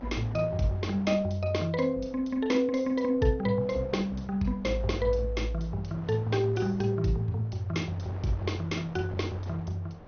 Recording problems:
lossy compression; MP2, log-spectral distance 2 dB, nothing above 6.3 kHz
wind on the microphone; below 790 Hz, SNR 18 dB

